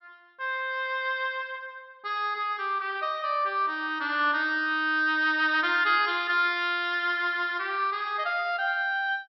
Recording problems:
treble cut off; nothing above 5.5 kHz

